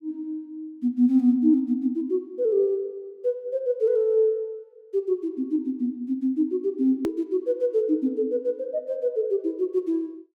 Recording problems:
edit click; at 7 s

